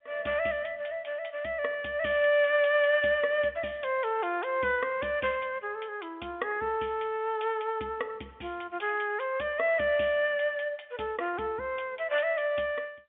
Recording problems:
phone line; 240 Hz to 3.5 kHz, G.711

